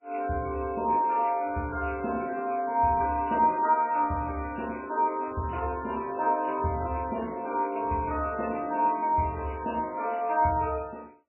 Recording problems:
codec artefacts; MP3, log-spectral distance 6 dB, nothing above 2.7 kHz

